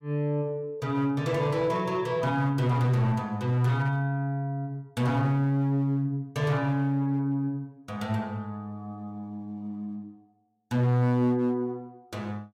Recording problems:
distortion; hard clipping, signal-to-distortion ratio 11 dB

